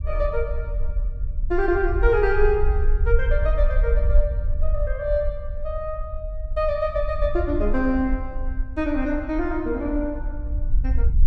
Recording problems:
low-frequency rumble; below 56 Hz, SNR 2 dB

